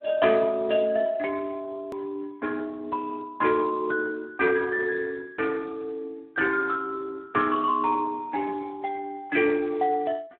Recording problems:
telephone audio; 300 Hz to 2.9 kHz, Speex
click at an edit; at 2 s

